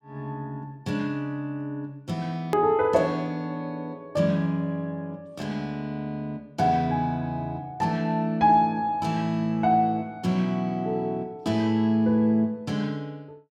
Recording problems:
click at an edit; at 2.5 s

